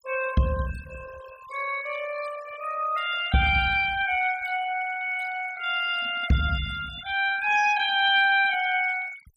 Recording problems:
noise reduction artefacts; signal-to-artefact ratio 16 dB

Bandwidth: 15.5 kHz